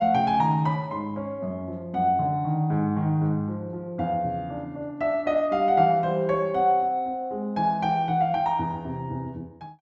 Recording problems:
none

